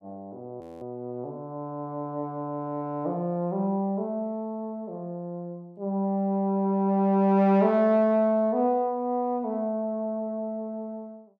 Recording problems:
audio freezing; at 0.5 s

